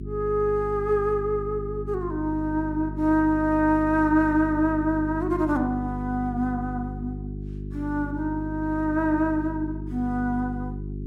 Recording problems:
hum; 50 Hz, harmonics up to 400 Hz, SNR 9 dB

